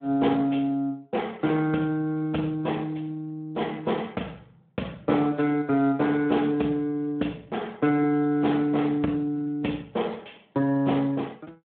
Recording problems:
telephone audio; 190 Hz to 3.2 kHz, Speex

